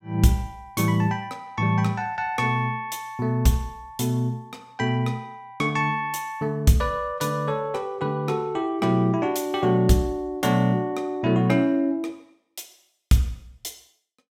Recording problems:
none

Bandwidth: 16 kHz